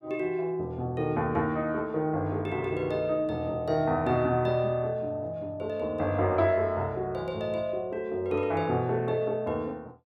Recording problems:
none

